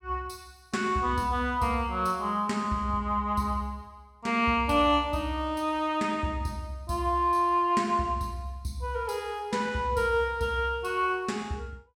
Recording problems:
none

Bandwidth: 16 kHz